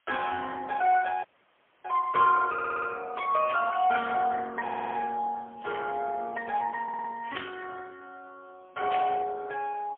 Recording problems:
telephone audio; 280 Hz to 2.5 kHz, AMR-NB, then MP3
hiss; SNR 41 dB
audio cutting out; at 1 s for 0.5 s
stutter; at 2.5 s, at 4.5 s and at 7 s
static burst; at 3.5 s, at 7.5 s and at 9 s; peak -3 dB vs average level

